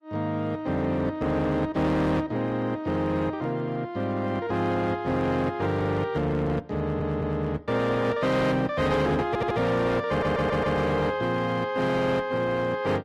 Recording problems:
codec artefacts; AAC, log-spectral distance 2 dB, nothing above 13.1 kHz
distortion; hard clipping, signal-to-distortion ratio 11 dB
audio stuttering; at 7 s, at 9.5 s and at 10 s

